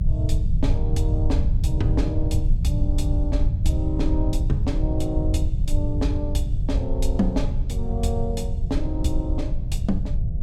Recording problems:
electrical hum; 60 Hz, harmonics up to 720 Hz, SNR 21 dB
rumble; below 88 Hz, SNR -4 dB

